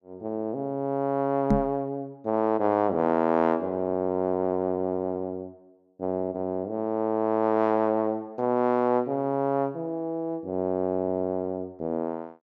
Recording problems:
microphone thump; at 1.5 s; peak +7 dB vs average level

